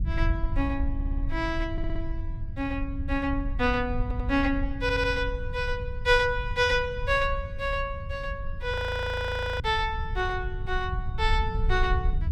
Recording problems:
rumble; below 78 Hz, SNR 5 dB
stutter; 4 times, first at 1 s
audio freezing; at 8.5 s for 1 s

